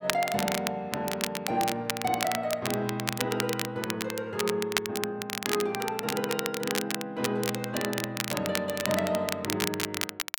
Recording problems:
crackling; vinyl, SNR 2 dB

